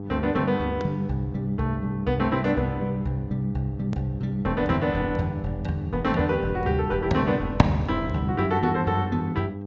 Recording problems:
treble cut off; nothing above 8 kHz
hum; 50 Hz, harmonics up to 900 Hz, SNR 10 dB
click at an edit; at 4 s

